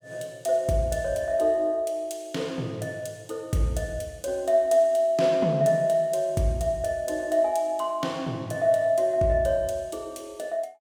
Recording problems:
none

